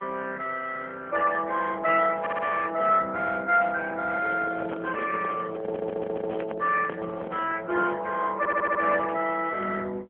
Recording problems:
phone line; 220 Hz to 2.9 kHz, AMR-NB
audio stuttering; at 2 s, at 5.5 s and at 8.5 s
microphone handling noise; from 4 to 7.5 s; peak -6 dB vs average level

